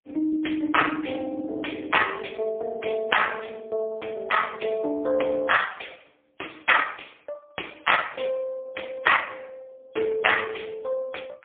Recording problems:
telephone audio; 260 Hz to 3.4 kHz, AMR-NB, then MP3

